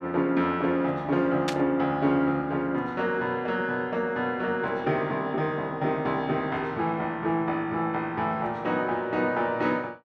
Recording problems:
static burst; at 1.5 s; peak +1 dB vs average level

